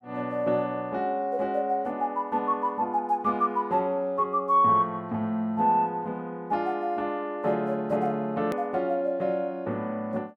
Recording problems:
click at an edit; at 8.5 s

